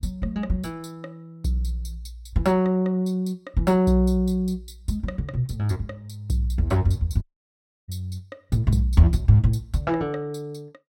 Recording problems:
audio cutting out; at 7 s for 0.5 s

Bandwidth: 16 kHz